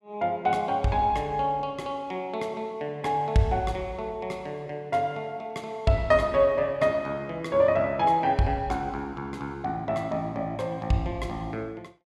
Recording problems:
none

